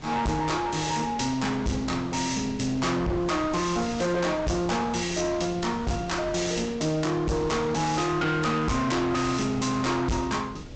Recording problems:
treble cut off; nothing above 7.8 kHz
lossy compression; Vorbis, log-spectral distance 4 dB
distorted audio; hard clipping, uneven, signal-to-distortion ratio 6 dB
wind on the microphone; below 430 Hz, SNR 15 dB

